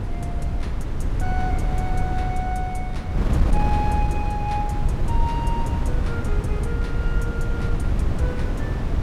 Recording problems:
wind on the microphone; below 110 Hz, SNR -6 dB

